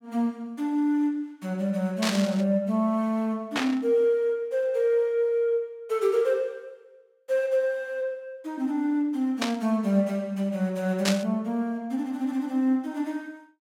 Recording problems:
static burst; 4 times, first at 2 s; peak +4 dB vs average level

